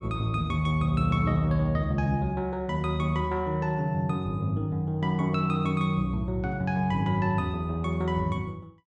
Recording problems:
none

